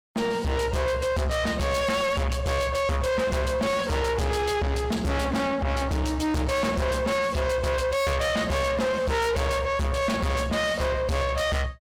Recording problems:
distorted audio; soft clipping, signal-to-distortion ratio 6 dB

